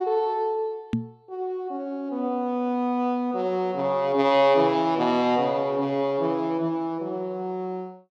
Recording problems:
microphone thump; at 1 s; peak +3 dB vs average level

